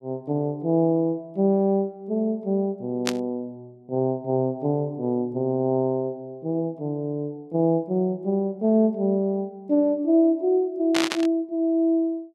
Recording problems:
burst of static; at 3 s and at 11 s; peak +3 dB vs average level

